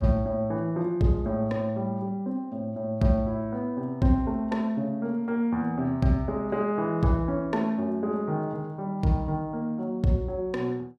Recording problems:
none

